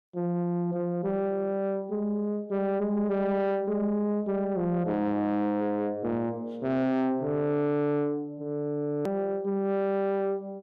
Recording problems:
distortion; soft clipping, signal-to-distortion ratio 12 dB
hard cut with a click; at 9 s

